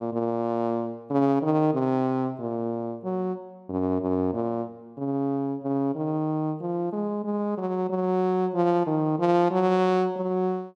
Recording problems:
none

